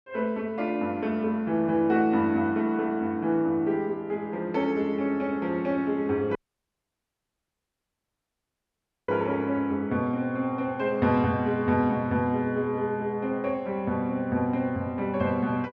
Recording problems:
dropout; at 6.5 s for 2.5 s

